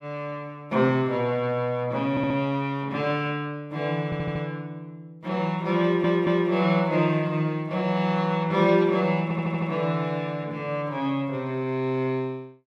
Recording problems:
stutter; 4 times, first at 2 s

